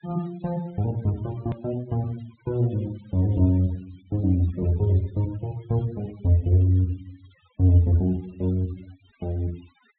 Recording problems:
treble cut off; nothing above 4 kHz
denoising artefacts; signal-to-artefact ratio 25 dB
edit click; at 1.5 s

